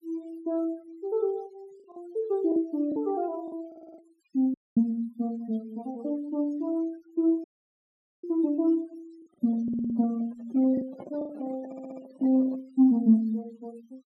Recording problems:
denoising artefacts; signal-to-artefact ratio 25 dB
lost packets; 4% of the sound replaced, filled with the last packet
audio stuttering; at 3.5 s, at 9.5 s and at 12 s
audio cutting out; at 4.5 s and at 7.5 s for 1 s
microphone handling noise; from 9.5 to 13 s; peak -11 dB vs average level

